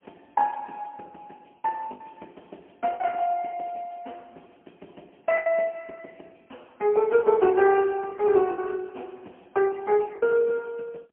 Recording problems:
phone line; 220 Hz to 3.2 kHz, AMR-NB, then MP3
packet loss; 4% of the sound replaced, filled with the last packet

